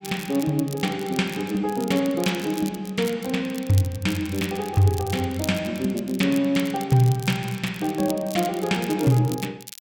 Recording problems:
crackle; vinyl, SNR 16 dB

